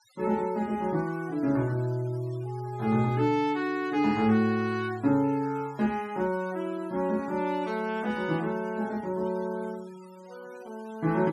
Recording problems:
noise reduction artefacts; signal-to-artefact ratio 24 dB

